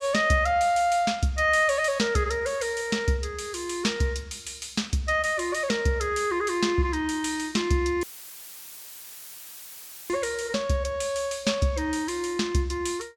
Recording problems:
dropout; at 8 s for 2 s; filled with static

